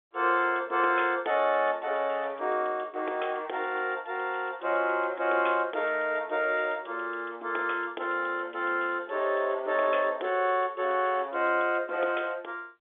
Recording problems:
telephone audio; 300 Hz to 3.6 kHz, G.711

